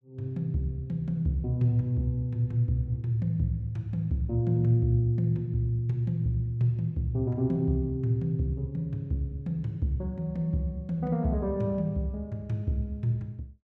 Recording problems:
none

